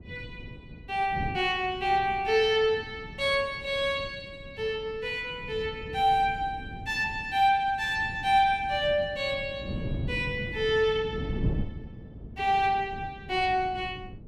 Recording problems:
wind on the microphone; below 210 Hz, SNR 13 dB

